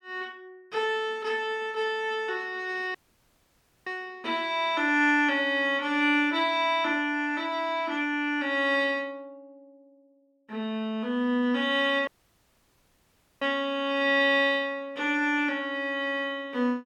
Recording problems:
dropout; at 3 s for 1 s and at 12 s for 1.5 s

